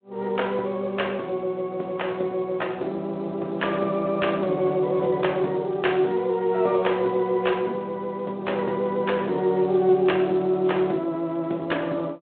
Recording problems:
phone line; 220 Hz to 3.6 kHz, Speex

